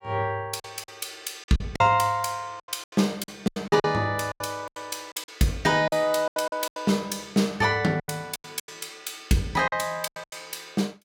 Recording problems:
lost packets; 14% of the sound replaced, filled with silence

